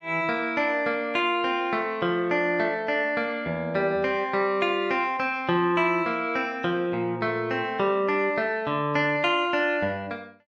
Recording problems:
none

